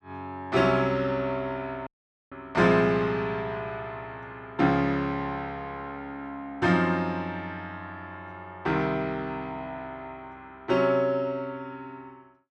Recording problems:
audio cutting out; at 2 s

